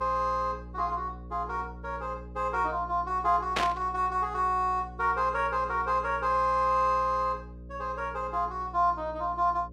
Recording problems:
hum; 60 Hz, harmonics up to 600 Hz, SNR 16 dB
burst of static; at 3.5 s; peak +4 dB vs average level

